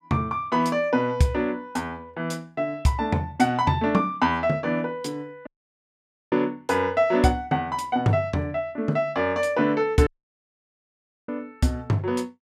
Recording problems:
audio cutting out; at 5.5 s for 1 s and at 10 s for 1 s

